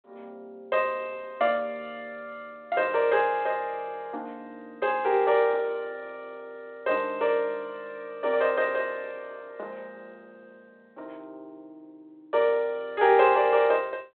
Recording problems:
telephone audio; 300 Hz to 3.6 kHz, G.726

